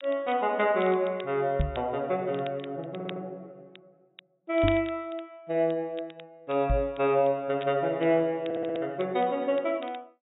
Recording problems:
low-pass filter; nothing above 4 kHz
crackle; vinyl, SNR 22 dB
microphone bump; at 1.5 s, at 4.5 s and at 6.5 s; peak +4 dB vs average level
stutter; at 3 s and at 8.5 s

